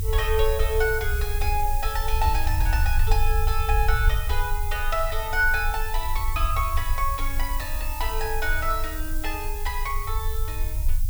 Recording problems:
hiss; slope +5 dB per octave, SNR 8 dB
rumble; below 62 Hz, strongest tone 22 Hz, SNR 1 dB

